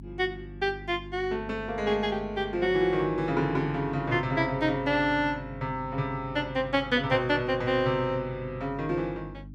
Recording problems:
mains hum; 50 Hz, harmonics up to 300 Hz, SNR 16 dB

